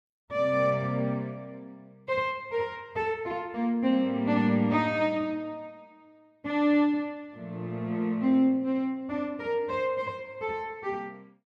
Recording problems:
none

